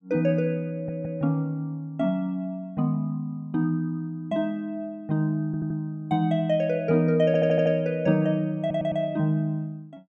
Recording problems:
stutter; 4 times, first at 0.5 s

